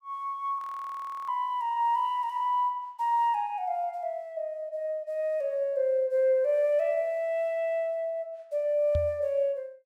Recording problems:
frozen audio; at 0.5 s for 0.5 s
knock on the microphone; at 9 s; peak +1 dB vs average level

